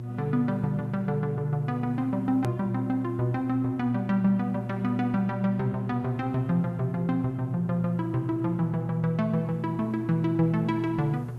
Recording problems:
hum; 60 Hz, harmonics up to 360 Hz, SNR 8 dB
hiss; SNR 27 dB
edit click; at 2.5 s

